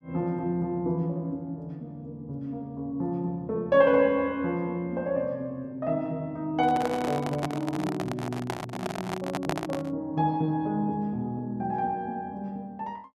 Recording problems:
handling noise; from 6.5 to 10 s; peak +3 dB vs average level

